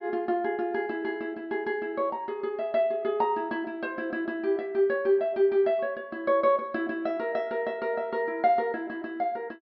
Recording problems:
treble cut off; nothing above 5.5 kHz

